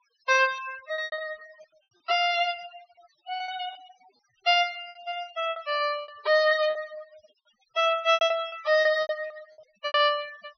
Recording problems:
treble cut off; nothing above 6.2 kHz
denoising artefacts; signal-to-artefact ratio 20 dB
packet loss; 13% of the sound replaced, filled with repeated pitch periods

